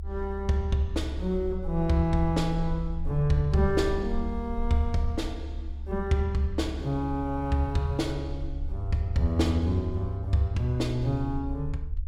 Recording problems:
rumble; below 70 Hz, SNR 8 dB

